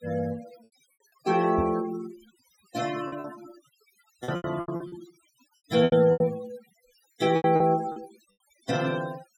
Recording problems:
denoising artefacts; signal-to-artefact ratio 16 dB
packet loss; 12% of the sound replaced, filled with repeated pitch periods
microphone bump; at 1.5 s; peak -1 dB vs average level

